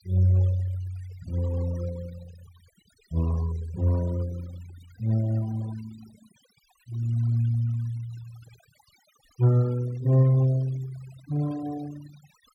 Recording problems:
denoising artefacts; signal-to-artefact ratio 21 dB

